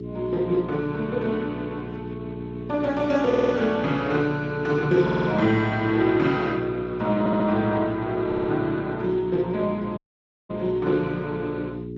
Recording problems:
codec artefacts; Speex, log-spectral distance 3 dB
mains hum; 60 Hz, harmonics up to 420 Hz, SNR 10 dB
audio stuttering; 4 times, first at 3.5 s
dropout; at 10 s for 0.5 s

